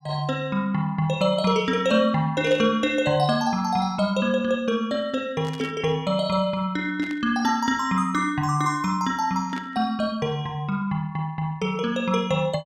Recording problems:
static burst; 4 times, first at 2.5 s; peak -11 dB vs average level

